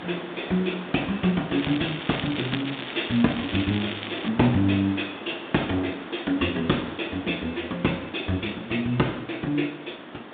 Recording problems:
phone line; 190 Hz to 3.8 kHz, G.726
background hiss; SNR 12 dB
crackling; from 1.5 to 4.5 s; loose cable, SNR 8 dB

